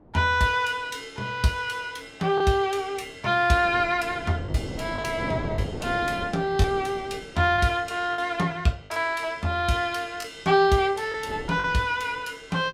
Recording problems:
wind noise; below 490 Hz, SNR 12 dB
lost packets; 3% of the sound replaced, filled with the last packet

